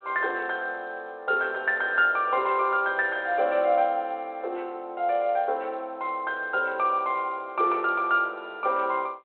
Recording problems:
phone line; 340 Hz to 3.5 kHz, G.726

